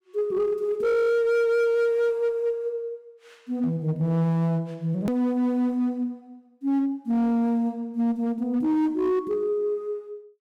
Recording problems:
distortion; hard clipping, uneven, signal-to-distortion ratio 12 dB
edit click; at 5 s

